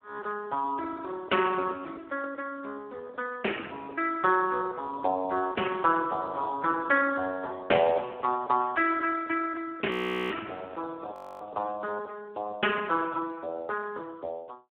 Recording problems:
phone line; 240 Hz to 2.6 kHz, Speex
audio freezing; at 10 s and at 11 s

